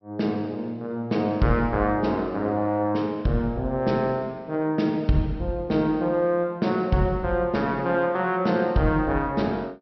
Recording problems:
low-pass filter; nothing above 5.7 kHz

